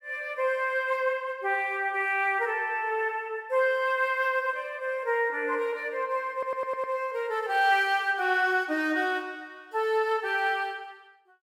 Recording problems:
audio stuttering; at 6.5 s

